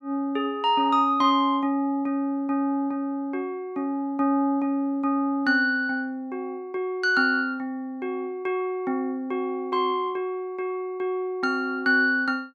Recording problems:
none

